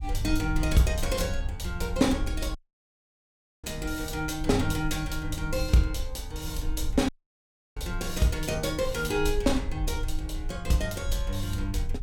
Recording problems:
rumble; below 64 Hz, SNR 6 dB
dropout; at 2.5 s for 1 s and at 7 s for 0.5 s

